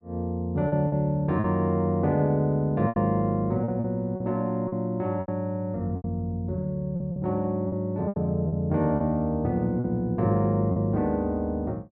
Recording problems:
packet loss; 7% of the sound replaced, filled with repeated pitch periods

